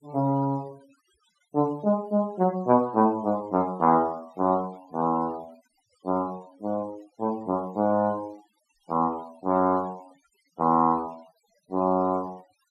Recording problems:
denoising artefacts; signal-to-artefact ratio 27 dB

